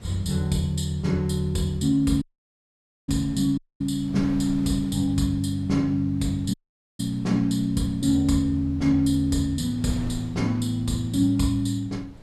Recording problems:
wind on the microphone; below 220 Hz, SNR 19 dB
dropout; at 2 s for 1 s, at 3.5 s and at 6.5 s

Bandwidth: 14.5 kHz